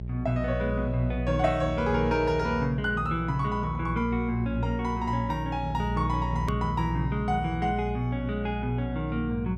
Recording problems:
hum; 60 Hz, harmonics up to 420 Hz, SNR 5 dB
edit click; at 6.5 s

